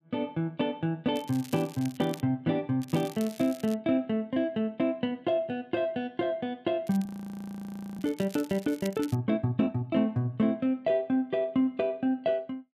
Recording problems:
crackling; from 1 to 2 s, at 3 s and from 7 to 9 s; loose cable, SNR 19 dB
audio freezing; at 7 s for 1 s

